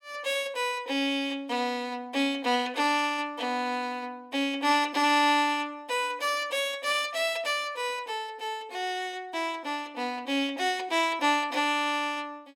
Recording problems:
none

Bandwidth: 16 kHz